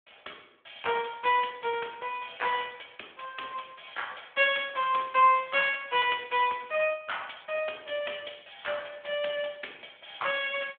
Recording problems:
telephone audio; 280 Hz to 3.4 kHz, Speex

